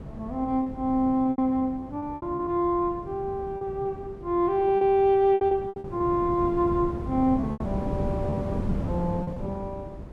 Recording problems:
wind on the microphone; below 270 Hz, SNR 9 dB
lost packets; 10% of the sound replaced, filled with repeated pitch periods

